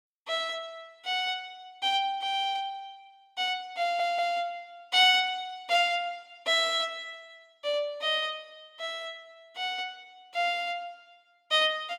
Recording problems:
stutter; at 4 s

